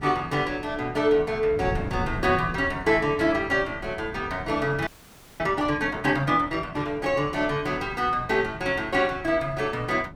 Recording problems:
wind on the microphone; below 200 Hz, SNR 14 dB
frozen audio; at 5 s for 0.5 s

